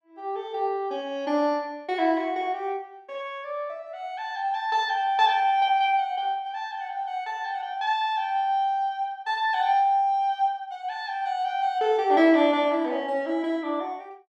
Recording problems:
none

